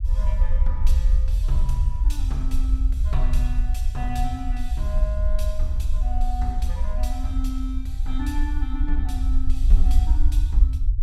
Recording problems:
rumble; below 54 Hz, SNR -9 dB

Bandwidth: 16 kHz